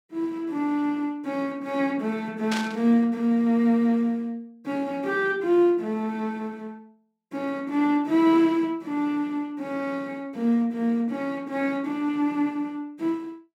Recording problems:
burst of static; at 2.5 s; peak -1 dB vs average level

